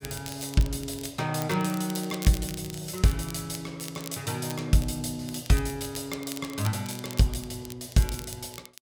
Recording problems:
crackle; vinyl, SNR 13 dB

